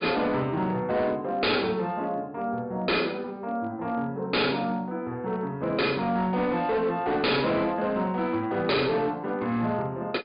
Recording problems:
treble cut off; nothing above 4.9 kHz
distorted audio; hard clipping, signal-to-distortion ratio 6 dB

